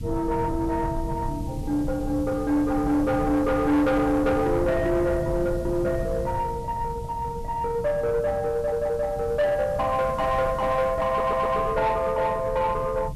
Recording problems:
distorted audio; soft clipping, signal-to-distortion ratio 11 dB
hiss; slope +2 dB per octave, SNR 27 dB
low-frequency rumble; below 160 Hz, SNR 10 dB
audio stuttering; at 8.5 s and at 11 s

